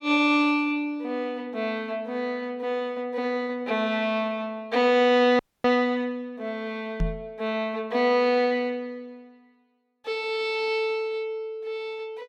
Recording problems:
frozen audio; at 5.5 s
microphone bump; at 7 s; peak +1 dB vs average level

